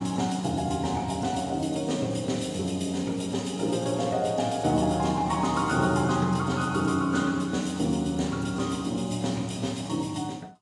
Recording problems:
lossy compression; AAC, log-spectral distance 4 dB, nothing above 11 kHz

